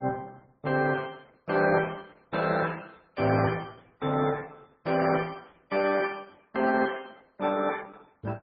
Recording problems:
lossy compression; Opus, then MP3, log-spectral distance 4 dB, nothing above 4.2 kHz

